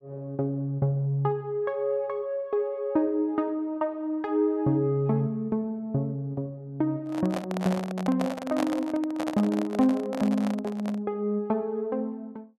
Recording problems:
handling noise; from 7 to 11 s; peak +1 dB vs average level

